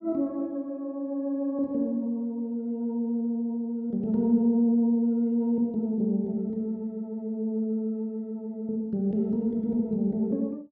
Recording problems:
none

